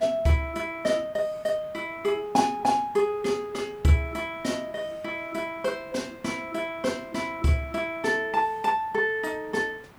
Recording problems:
hiss; SNR 24 dB

